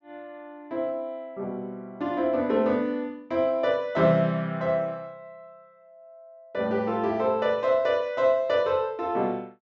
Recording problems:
treble cut off; nothing above 8 kHz

